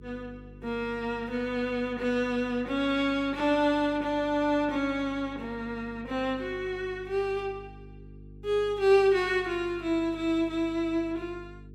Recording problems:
hum; 50 Hz, harmonics up to 450 Hz, SNR 20 dB

